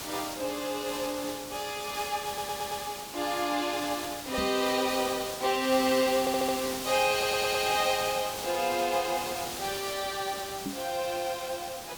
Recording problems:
hiss; slope -1 dB per octave, SNR 7 dB
stutter; at 2.5 s, at 6 s and at 7 s
microphone bump; at 4.5 s and at 11 s; peak -2 dB vs average level

